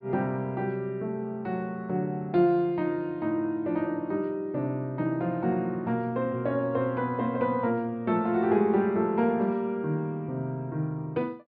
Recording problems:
treble cut off; nothing above 5 kHz

